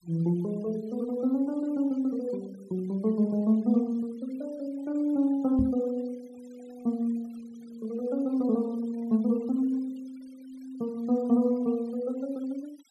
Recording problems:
noise reduction artefacts; signal-to-artefact ratio 28 dB
microphone thump; at 5.5 s; peak +3 dB vs average level

